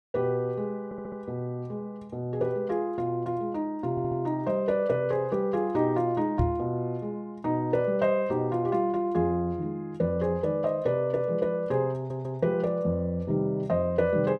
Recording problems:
stutter; at 1 s, at 4 s and at 12 s
microphone thump; at 6.5 s; peak +4 dB vs average level

